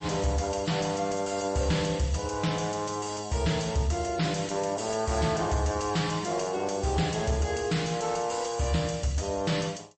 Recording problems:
codec artefacts; MP3, log-spectral distance 4 dB, nothing above 8 kHz
distortion; soft clipping, signal-to-distortion ratio 11 dB

